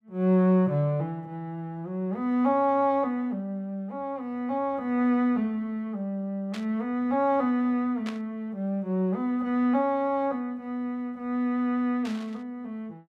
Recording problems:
burst of static; at 6.5 s, at 8 s and at 12 s; peak -7 dB vs average level

